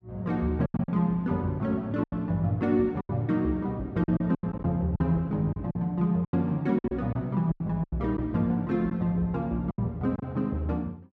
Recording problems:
packet loss; 10% of the sound replaced, filled with silence

